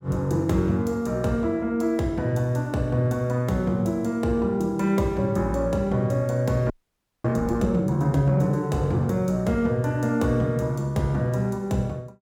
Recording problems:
audio freezing; at 6.5 s for 0.5 s

